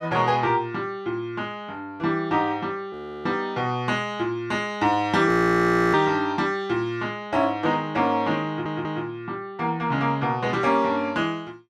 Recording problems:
frozen audio; at 3 s and at 5.5 s for 0.5 s
audio stuttering; at 8.5 s

